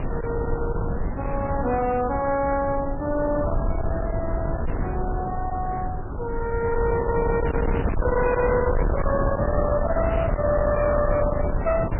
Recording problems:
codec artefacts; MP3, log-spectral distance 3 dB, nothing above 2.4 kHz
distortion; hard clipping, uneven, signal-to-distortion ratio 7 dB
wind on the microphone; below 490 Hz, SNR 2 dB

